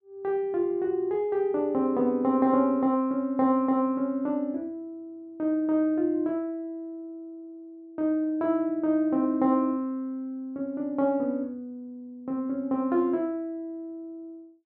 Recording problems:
none

